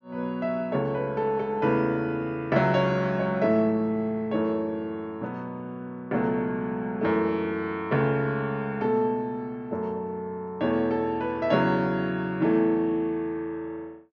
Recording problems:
treble cut off; nothing above 6.9 kHz

